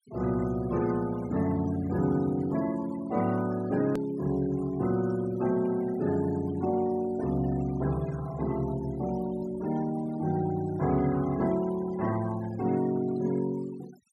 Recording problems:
denoising artefacts; signal-to-artefact ratio 18 dB
click at an edit; at 4 s

